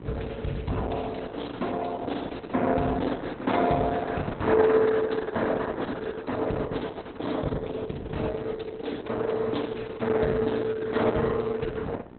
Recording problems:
lossy codec; Opus, log-spectral distance 4 dB, nothing above 4 kHz
hum; 60 Hz, harmonics up to 2 kHz, SNR 18 dB

